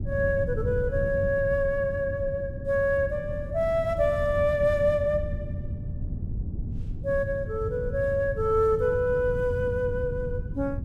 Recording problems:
low-frequency rumble; below 140 Hz, SNR 8 dB

